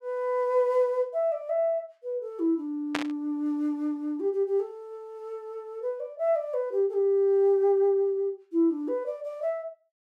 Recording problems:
burst of static; at 3 s; peak +2 dB vs average level

